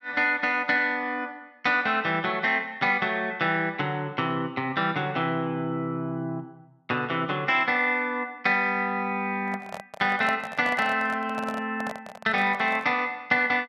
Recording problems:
handling noise; from 9.5 to 13 s; peak -3 dB vs average level

